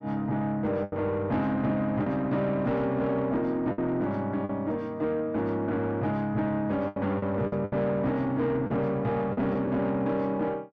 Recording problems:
distortion; soft clipping, signal-to-distortion ratio 11 dB
lost packets; 5% of the sound replaced, filled with the last packet

